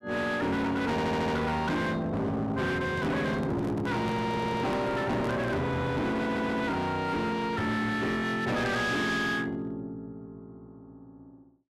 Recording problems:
distortion; hard clipping, uneven, signal-to-distortion ratio 7 dB
stutter; at 1 s, at 4.5 s and at 6 s
handling noise; from 3 to 5.5 s; peak -5 dB vs average level

